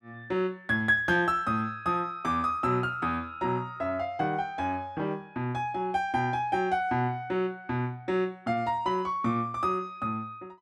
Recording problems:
none

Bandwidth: 14 kHz